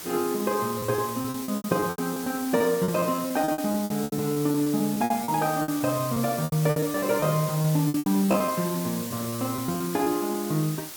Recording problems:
background hiss; SNR 10 dB
packet loss; 16% of the sound replaced, filled with repeated pitch periods

